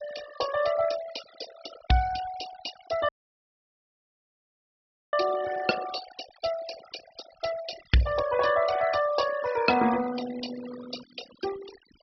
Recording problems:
low-pass filter; nothing above 5.5 kHz
denoising artefacts; signal-to-artefact ratio 12 dB
audio cutting out; at 3 s for 2 s

